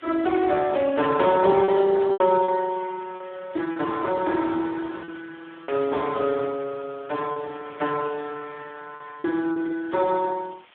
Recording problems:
telephone audio; 260 Hz to 2 kHz, Speex
hiss; SNR 27 dB
lost packets; 5% of the sound replaced, filled with repeated pitch periods

